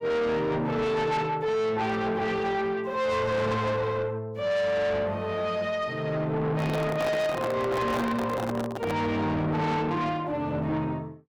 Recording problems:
distortion; soft clipping, signal-to-distortion ratio 7 dB
microphone handling noise; from 6.5 to 9 s; peak 0 dB vs average level

